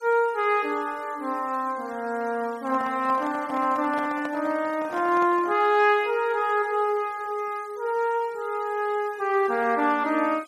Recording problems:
noise reduction artefacts; signal-to-artefact ratio 25 dB
microphone handling noise; from 2.5 to 5.5 s; peak -8 dB vs average level

